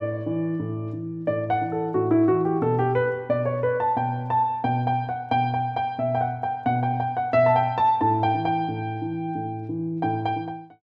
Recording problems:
none

